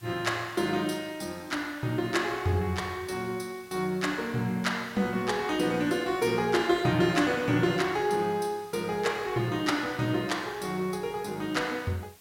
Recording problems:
background hiss; slope 0 dB per octave, SNR 25 dB

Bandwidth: 16.5 kHz